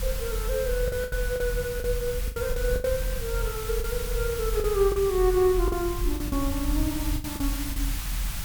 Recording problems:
background hiss; SNR 8 dB
rumble; below 58 Hz, strongest tone 42 Hz, SNR 5 dB
packet loss; 10% of the sound replaced, filled with the last packet

